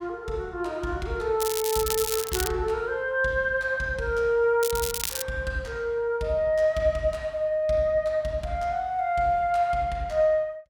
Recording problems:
crackle; from 1.5 to 2.5 s and at 4.5 s; loose cable, SNR 4 dB

